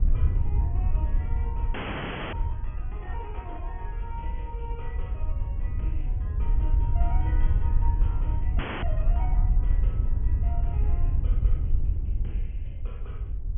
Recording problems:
low-pass filter; nothing above 3.3 kHz
wind noise; below 72 Hz, SNR -15 dB
audio freezing; at 1.5 s for 0.5 s and at 8.5 s

